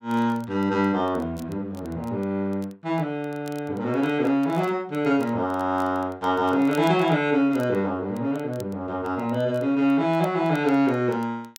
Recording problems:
crackle; vinyl, SNR 28 dB

